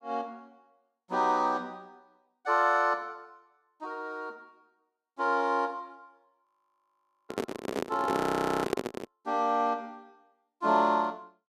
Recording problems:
frozen audio; at 6.5 s for 1 s and at 8 s
microphone handling noise; from 7.5 to 9 s; peak +4 dB vs average level

